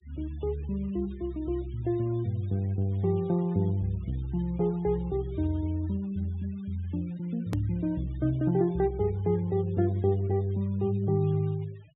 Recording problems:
treble missing; nothing above 4 kHz
noise reduction artefacts; signal-to-artefact ratio 26 dB
hard cut with a click; at 7.5 s

